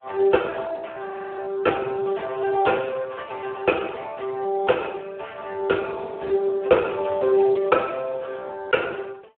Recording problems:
phone line; 260 Hz to 2.6 kHz, Speex
audio freezing; at 1 s

